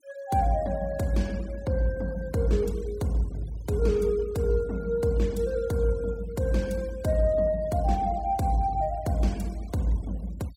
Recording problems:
noise reduction artefacts; signal-to-artefact ratio 23 dB

